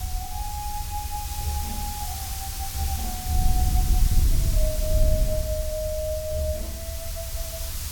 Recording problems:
hiss; slope +2 dB per octave, SNR 1 dB
rumble; below 78 Hz, SNR 4 dB
wind on the microphone; below 70 Hz, SNR -3 dB

